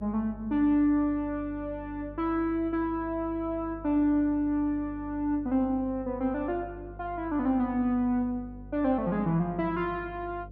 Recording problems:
hum; 50 Hz, harmonics up to 550 Hz, SNR 17 dB

